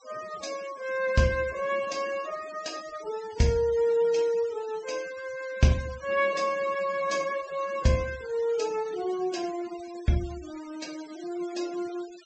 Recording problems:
treble cut off; nothing above 8 kHz
denoising artefacts; signal-to-artefact ratio 18 dB

